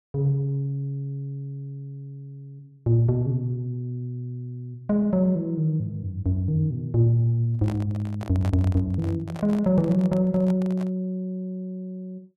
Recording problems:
handling noise; from 7.5 to 11 s; peak -7 dB vs average level

